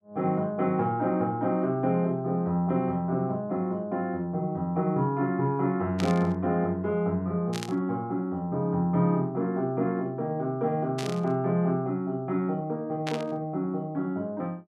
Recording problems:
burst of static; 4 times, first at 6 s; peak -2 dB vs average level

